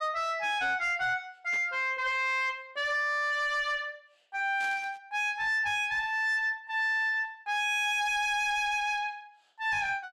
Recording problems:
distortion; soft clipping, signal-to-distortion ratio 11 dB
static burst; at 1.5 s and at 4.5 s; peak -12 dB vs average level

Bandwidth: 14 kHz